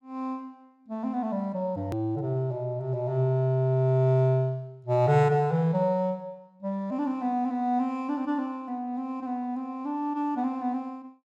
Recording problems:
click at an edit; at 2 s

